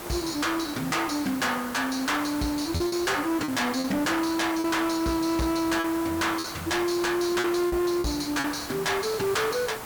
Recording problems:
distortion; soft clipping, signal-to-distortion ratio 11 dB
background hiss; SNR 11 dB
packet loss; 5% of the sound replaced, filled with repeated pitch periods

